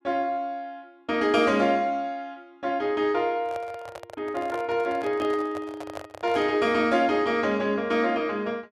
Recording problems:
handling noise; from 3.5 to 6.5 s; peak -7 dB vs average level

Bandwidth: 13 kHz